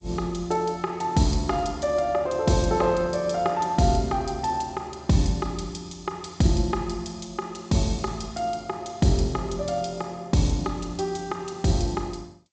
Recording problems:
lossy codec; G.722, log-spectral distance 4 dB, nothing above 7.8 kHz

